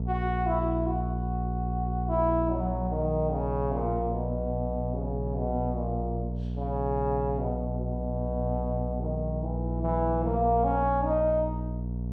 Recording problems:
hum; 60 Hz, harmonics up to 480 Hz, SNR 2 dB

